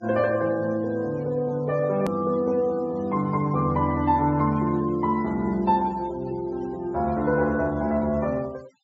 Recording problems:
treble cut off; nothing above 8 kHz
noise reduction artefacts; signal-to-artefact ratio 25 dB
edit click; at 2 s

